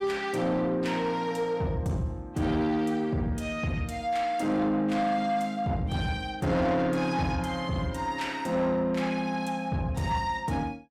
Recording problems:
distortion; soft clipping, signal-to-distortion ratio 10 dB

